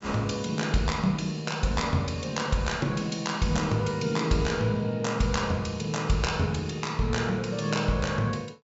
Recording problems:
low-pass filter; nothing above 8 kHz

